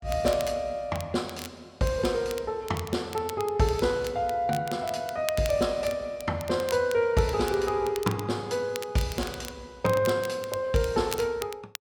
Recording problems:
crackle; vinyl, SNR 15 dB

